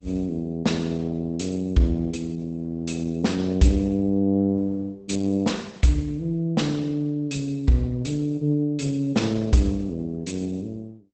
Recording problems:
lossy compression; Opus, log-spectral distance 3 dB, nothing above 8.2 kHz

